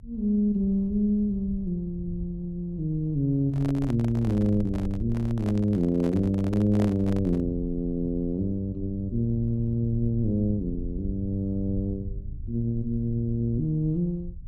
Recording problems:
low-frequency rumble; below 88 Hz, SNR 13 dB
microphone handling noise; from 3.5 to 7.5 s; peak -5 dB vs average level

